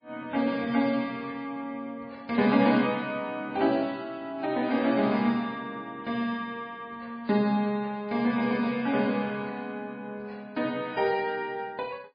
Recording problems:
lossy compression; MP3, log-spectral distance 2 dB

